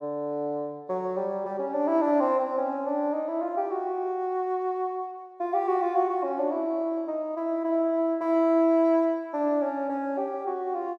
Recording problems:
none

